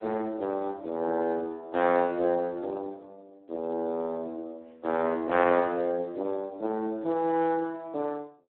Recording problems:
telephone audio; 220 Hz to 2.9 kHz, Speex

